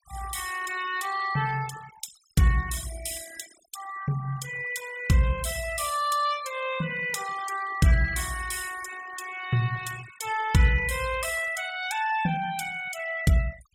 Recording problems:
noise reduction artefacts; signal-to-artefact ratio 14 dB

